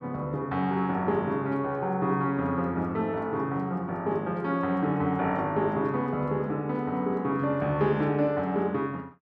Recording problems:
none

